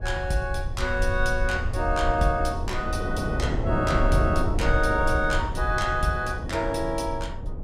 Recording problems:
rumble; below 78 Hz, SNR 5 dB
wind on the microphone; below 460 Hz, SNR 6 dB

